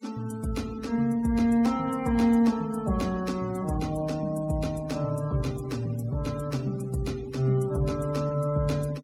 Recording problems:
denoising artefacts; signal-to-artefact ratio 20 dB

